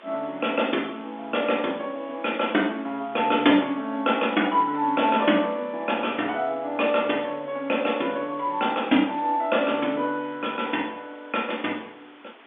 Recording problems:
phone line; 220 Hz to 3.6 kHz, G.711
background hiss; SNR 24 dB

